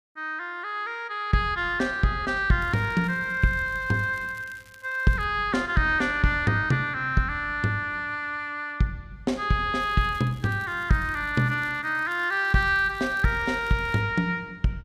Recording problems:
crackle; from 2.5 to 5 s and from 10 to 14 s; loose cable, SNR 27 dB

